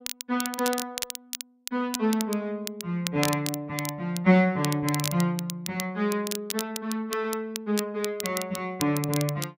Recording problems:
crackling; vinyl, SNR 7 dB

